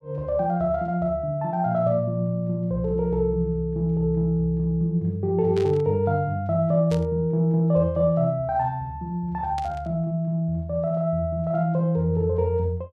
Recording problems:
burst of static; at 5.5 s, at 7 s and at 9.5 s; peak -11 dB vs average level

